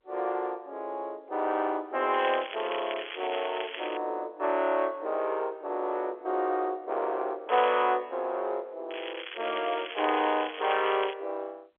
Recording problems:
phone line; 300 Hz to 3.4 kHz, G.711
crackling; from 2 to 4 s, at 7.5 s and from 9 to 11 s; loose cable, SNR 9 dB

